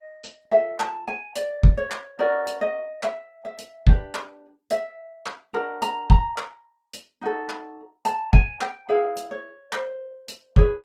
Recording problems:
codec artefacts; Opus, log-spectral distance 3 dB, nothing above 18.3 kHz

